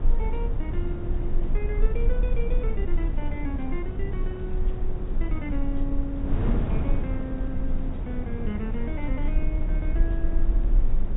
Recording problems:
low-pass filter; nothing above 4 kHz
low-frequency rumble; below 40 Hz, strongest tone 24 Hz, SNR -5 dB
wind on the microphone; below 220 Hz, SNR -2 dB

